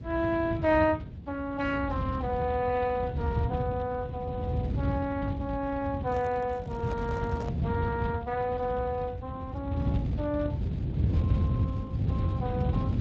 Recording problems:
codec artefacts; Speex, log-spectral distance 2 dB
low-frequency rumble; below 170 Hz, SNR 0 dB
handling noise; from 6 to 7.5 s; peak -5 dB vs average level

